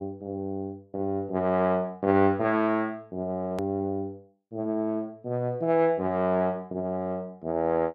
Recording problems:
click at an edit; at 3.5 s

